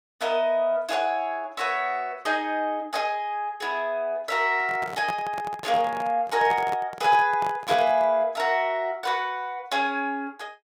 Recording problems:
microphone handling noise; from 4.5 to 8.5 s; peak -3 dB vs average level

